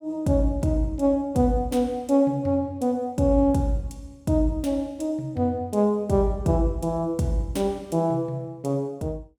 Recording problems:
none

